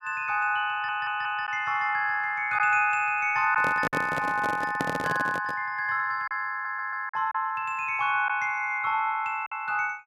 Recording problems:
lost packets; 3% of the sound replaced, filled with silence
stutter; at 0.5 s and at 6.5 s
handling noise; from 3.5 to 5.5 s; peak +1 dB vs average level

